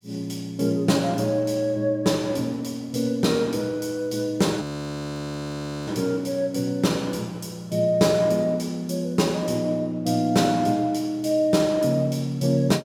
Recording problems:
audio freezing; at 4.5 s for 1.5 s

